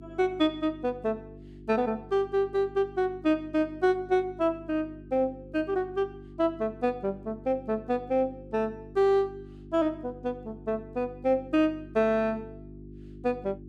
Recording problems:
mains hum; 50 Hz, harmonics up to 400 Hz, SNR 18 dB

